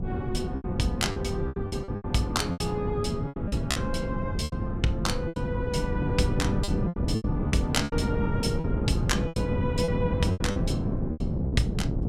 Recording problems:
wind on the microphone; below 220 Hz, SNR -1 dB
packet loss; 12% of the sound replaced, filled with repeated pitch periods

